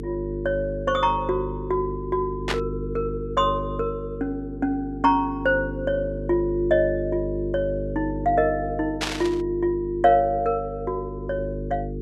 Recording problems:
mains hum; 50 Hz, harmonics up to 450 Hz, SNR 8 dB
static burst; at 2.5 s and at 9 s; peak +3 dB vs average level

